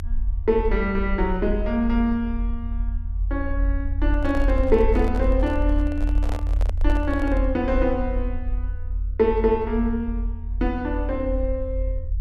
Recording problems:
low-frequency rumble; below 52 Hz, strongest tone 44 Hz, SNR 2 dB
microphone handling noise; from 4 to 7.5 s; peak -6 dB vs average level

